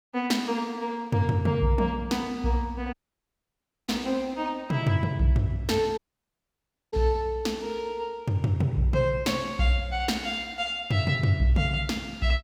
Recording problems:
dropout; at 3 s for 1 s and at 6 s for 1 s

